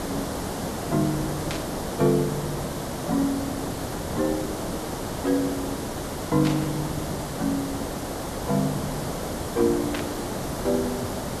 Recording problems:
background hiss; SNR 3 dB
static burst; at 1.5 s, at 6.5 s and at 10 s; peak 0 dB vs average level

